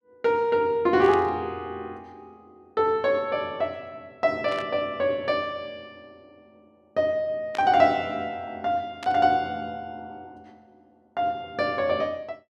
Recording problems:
burst of static; 4 times, first at 1 s; peak -8 dB vs average level

